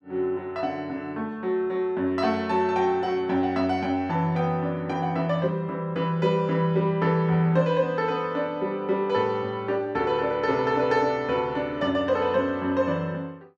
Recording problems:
none

